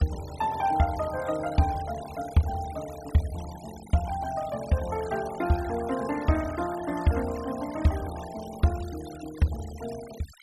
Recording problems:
denoising artefacts; signal-to-artefact ratio 16 dB

